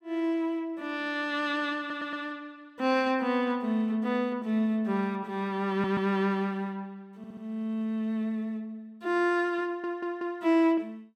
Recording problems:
audio stuttering; 4 times, first at 2 s

